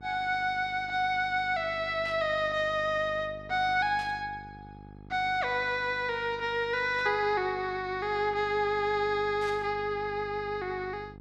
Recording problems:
hum; 50 Hz, harmonics up to 900 Hz, SNR 20 dB
static burst; 4 times, first at 2 s; peak -13 dB vs average level

